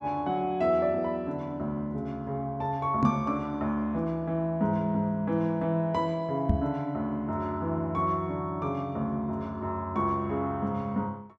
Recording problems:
microphone bump; at 3 s and at 6.5 s; peak +8 dB vs average level

